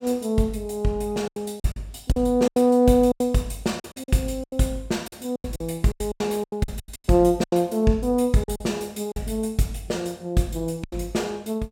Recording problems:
packet loss; 12% of the sound replaced, filled with silence

